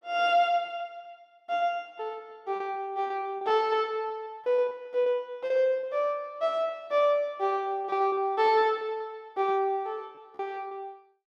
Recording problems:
packet loss; 10% of the sound replaced, filled with repeated pitch periods

